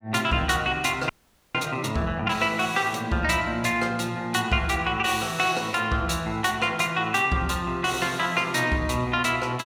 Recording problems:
frozen audio; at 1 s

